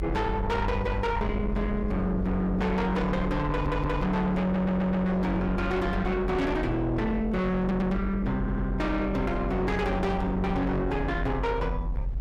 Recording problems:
distortion; soft clipping, signal-to-distortion ratio 7 dB
rumble; below 180 Hz, strongest tone 44 Hz, SNR 5 dB
stutter; 4 times, first at 3.5 s

